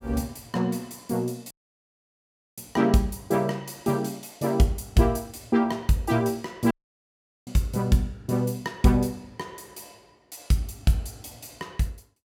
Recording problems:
dropout; at 1.5 s for 1 s and at 6.5 s for 1 s

